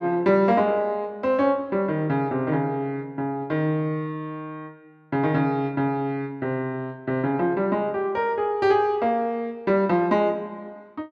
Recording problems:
none

